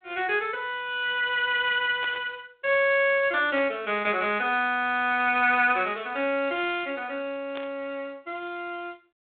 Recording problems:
phone line; 260 Hz to 3.7 kHz, G.726
burst of static; at 2 s, at 3.5 s and at 7.5 s; peak -9 dB vs average level

